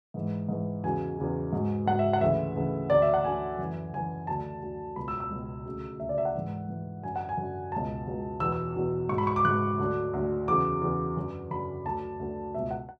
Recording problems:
none

